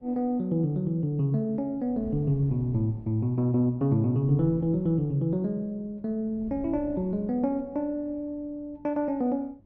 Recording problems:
wind on the microphone; below 200 Hz, SNR 19 dB

